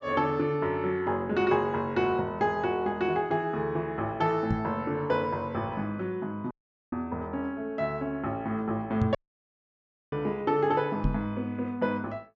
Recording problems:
treble cut off; nothing above 8 kHz
microphone thump; at 4.5 s, at 9 s and at 11 s; peak +5 dB vs average level
audio cutting out; at 6.5 s and at 9 s for 1 s

